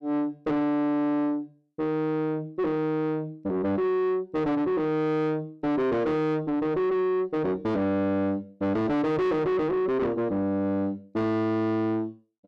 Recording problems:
distortion; soft clipping, signal-to-distortion ratio 6 dB

